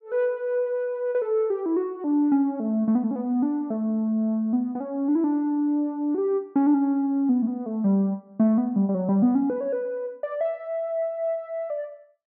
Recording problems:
none

